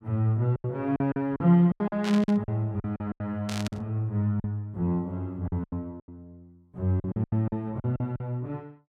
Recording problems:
packet loss; 14% of the sound replaced, filled with silence
burst of static; at 2 s and at 3.5 s; peak -3 dB vs average level

